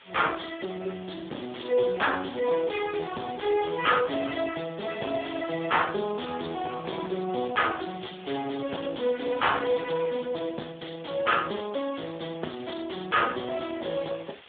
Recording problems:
phone line; 190 Hz to 3.5 kHz, Speex
distortion; soft clipping, signal-to-distortion ratio 11 dB
hiss; SNR 20 dB

